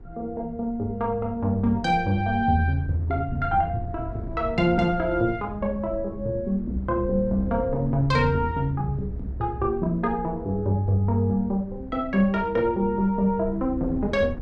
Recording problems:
wind on the microphone; below 120 Hz, SNR 14 dB

